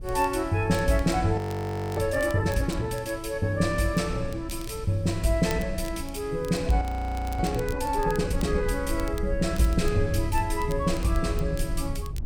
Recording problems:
rumble; below 72 Hz, SNR 9 dB
crackling; vinyl, SNR 21 dB
frozen audio; at 1.5 s for 0.5 s and at 7 s for 0.5 s

